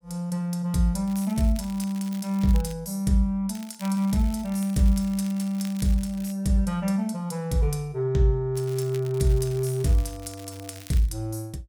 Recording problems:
crackling; from 1 to 2.5 s, from 3.5 to 6.5 s and from 8.5 to 11 s; loose cable, SNR 20 dB

